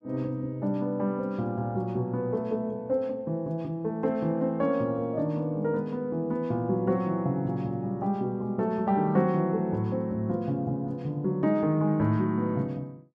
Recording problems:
none

